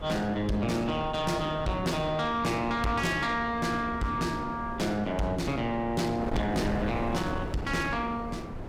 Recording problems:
distortion; soft clipping, signal-to-distortion ratio 10 dB
wind noise; below 500 Hz, SNR 9 dB

